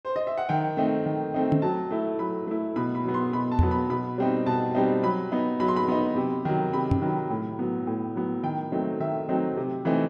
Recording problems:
microphone thump; at 1.5 s, at 3.5 s and at 7 s; peak +8 dB vs average level

